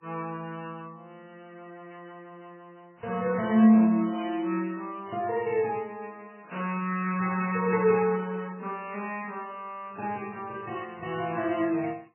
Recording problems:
codec artefacts; MP3, then MP3, log-spectral distance 3 dB, nothing above 2.7 kHz

